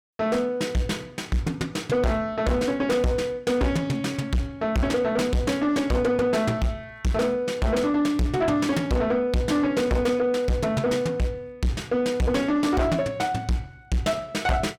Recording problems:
distorted audio; soft clipping, signal-to-distortion ratio 6 dB

